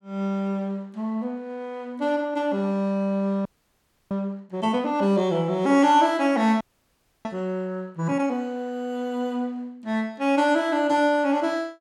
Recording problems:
frozen audio; at 3.5 s for 0.5 s and at 6.5 s for 0.5 s

